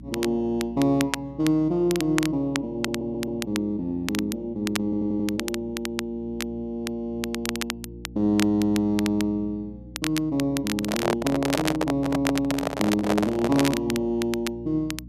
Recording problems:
hum; 60 Hz, harmonics up to 300 Hz, SNR 18 dB
crackle; vinyl, SNR 9 dB
stutter; at 3 s and at 5 s
handling noise; from 11 to 14 s; peak +4 dB vs average level

